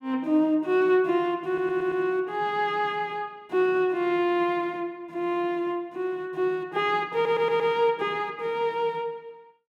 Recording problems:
stutter; at 1.5 s and at 7 s

